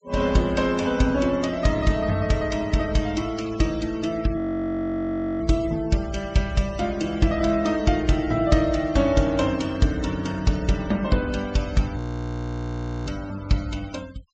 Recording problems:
low-pass filter; nothing above 8 kHz
denoising artefacts; signal-to-artefact ratio 20 dB
audio freezing; at 4.5 s for 1 s and at 12 s for 1 s

